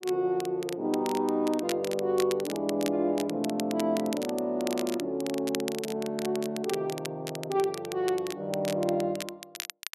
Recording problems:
crackle; vinyl, SNR 11 dB

